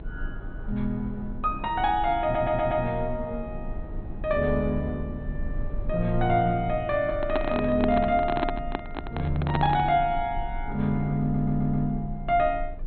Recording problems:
low-pass filter; nothing above 4.1 kHz
rumble; below 58 Hz, strongest tone 24 Hz, SNR 12 dB
audio stuttering; at 2 s and at 11 s
microphone handling noise; from 7 to 10 s; peak +2 dB vs average level

